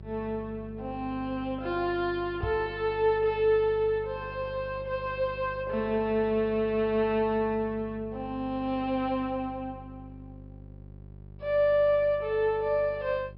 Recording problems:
low-pass filter; nothing above 5.5 kHz
electrical hum; 50 Hz, harmonics up to 600 Hz, SNR 17 dB
knock on the microphone; at 2.5 s; peak -1 dB vs average level

